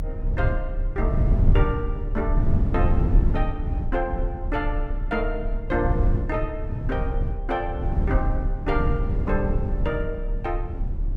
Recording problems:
rumble; below 94 Hz, SNR -4 dB

